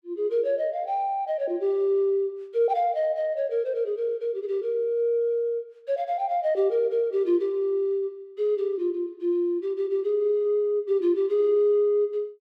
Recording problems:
none

